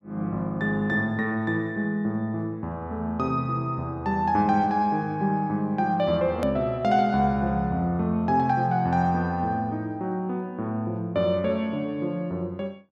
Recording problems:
hard cut with a click; at 6.5 s

